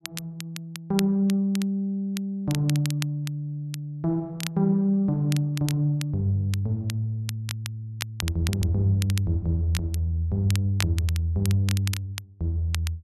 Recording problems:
crackling; vinyl, SNR 12 dB

